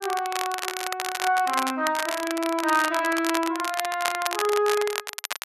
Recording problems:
crackling; vinyl, SNR 5 dB

